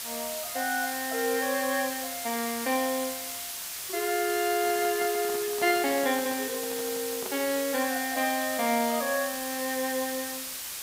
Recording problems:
hiss; slope +2 dB per octave, SNR 4 dB
handling noise; from 4.5 to 7.5 s; peak -7 dB vs average level

